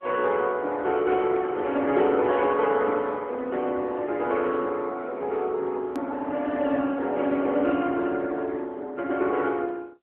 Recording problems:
telephone audio; 240 Hz to 3.4 kHz, AMR-NB
edit click; at 6 s

